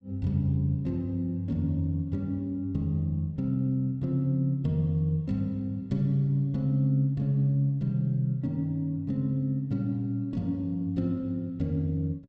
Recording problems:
none

